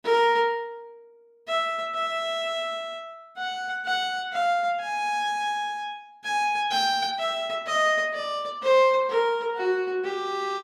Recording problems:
none

